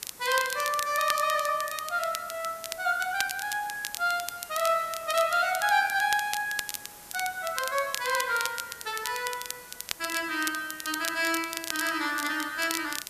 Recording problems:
background hiss; slope -2 dB per octave, SNR 17 dB
crackle; vinyl, SNR 8 dB

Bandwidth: 14.5 kHz